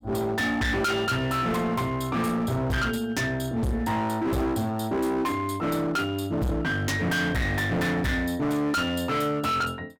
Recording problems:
distorted audio; hard clipping, signal-to-distortion ratio 6 dB

